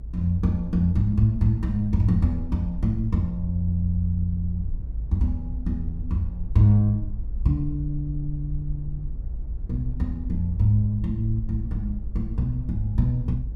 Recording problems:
low-frequency rumble; below 56 Hz, SNR 9 dB

